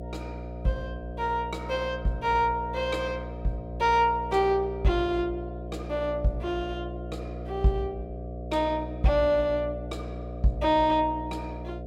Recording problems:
hum; 60 Hz, harmonics up to 720 Hz, SNR 10 dB

